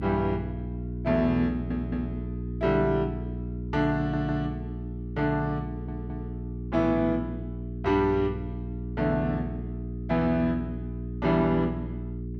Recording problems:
electrical hum; 60 Hz, harmonics up to 420 Hz, SNR 7 dB
stutter; at 1.5 s, at 4 s and at 5.5 s

